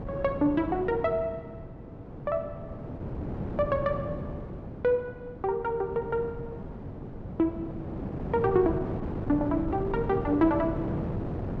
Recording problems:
wind on the microphone; below 370 Hz, SNR 7 dB

